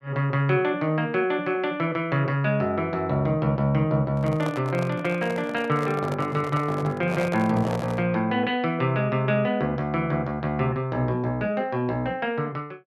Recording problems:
handling noise; from 4 to 8 s; peak -4 dB vs average level

